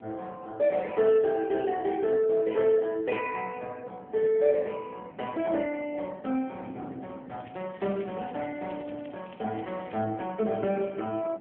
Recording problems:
telephone audio; 170 Hz to 3 kHz, AMR-NB
wind noise; below 430 Hz, SNR 19 dB
crackling; from 7.5 to 10 s; loose cable, SNR 26 dB

